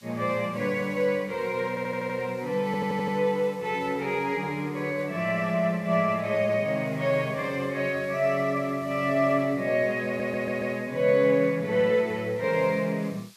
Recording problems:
hiss; slope +3 dB per octave, SNR 27 dB
stutter; at 1.5 s, at 2.5 s and at 10 s

